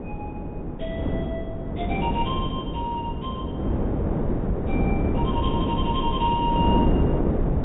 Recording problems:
treble missing; nothing above 4 kHz
wind on the microphone; below 360 Hz, SNR -4 dB

